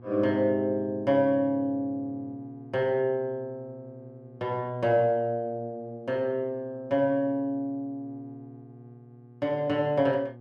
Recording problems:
hum; 60 Hz, harmonics up to 840 Hz, SNR 21 dB

